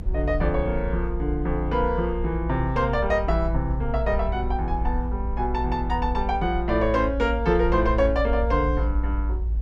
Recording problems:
low-frequency rumble; below 58 Hz, strongest tone 56 Hz, SNR 4 dB

